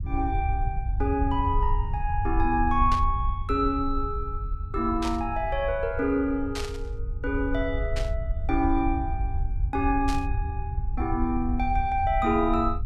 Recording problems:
low-frequency rumble; below 76 Hz, SNR 4 dB
static burst; 5 times, first at 3 s; peak -3 dB vs average level

